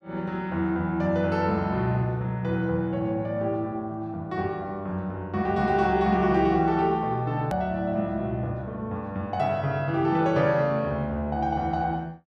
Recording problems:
hard cut with a click; at 7.5 s

